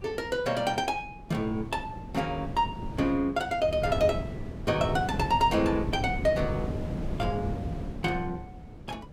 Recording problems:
wind on the microphone; below 260 Hz, SNR 7 dB

